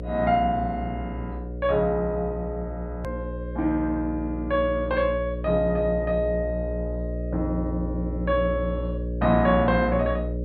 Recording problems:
treble missing; nothing above 4.8 kHz
hum; 60 Hz, harmonics up to 600 Hz, SNR 6 dB
hard cut with a click; at 3 s

